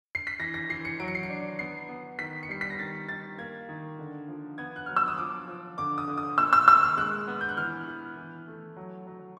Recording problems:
none

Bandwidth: 13 kHz